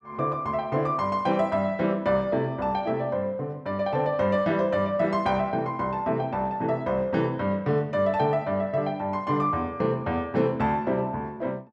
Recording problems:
none

